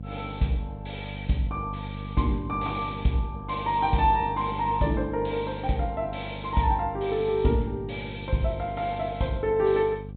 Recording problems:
treble cut off; nothing above 4 kHz
hum; 50 Hz, harmonics up to 550 Hz, SNR 11 dB

